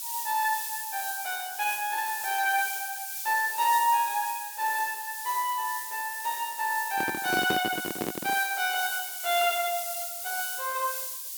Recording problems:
background hiss; SNR 5 dB
handling noise; from 7 to 8.5 s; peak +3 dB vs average level

